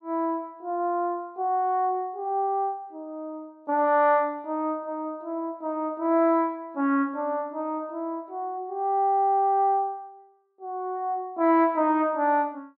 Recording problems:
none

